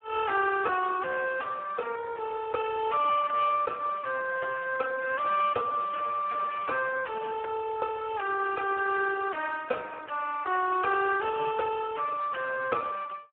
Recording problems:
phone line; 320 Hz to 2.4 kHz, Speex

